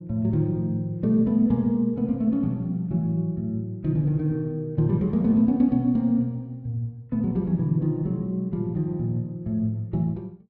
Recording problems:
none

